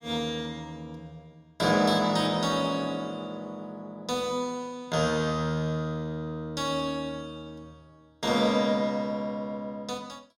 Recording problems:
none

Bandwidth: 16 kHz